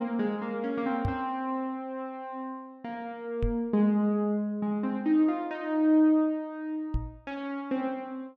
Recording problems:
microphone bump; at 1 s, at 3.5 s and at 7 s; peak +2 dB vs average level

